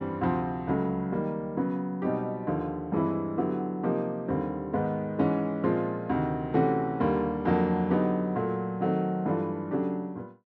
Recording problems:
none

